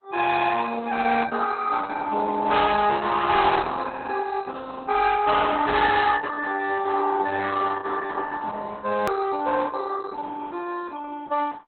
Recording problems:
codec artefacts; Opus, log-spectral distance 4 dB, nothing above 17.7 kHz
distortion; hard clipping, uneven, signal-to-distortion ratio 11 dB
edit click; at 9 s

